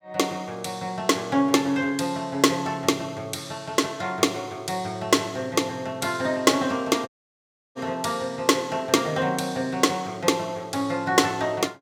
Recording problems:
audio cutting out; at 7 s for 0.5 s

